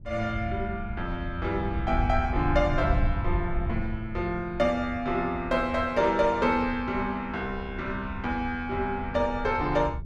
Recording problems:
wind on the microphone; below 94 Hz, SNR 7 dB

